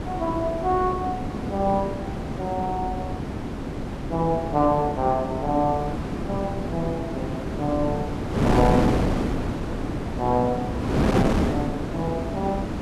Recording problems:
wind noise; below 490 Hz, SNR 1 dB

